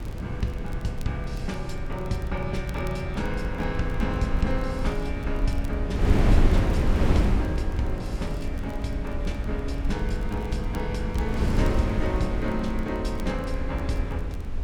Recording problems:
low-frequency rumble; below 60 Hz, SNR 4 dB
wind on the microphone; below 200 Hz, SNR -1 dB
crackling; vinyl, SNR 24 dB

